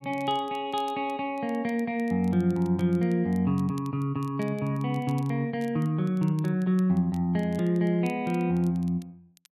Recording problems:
crackling; vinyl, SNR 28 dB

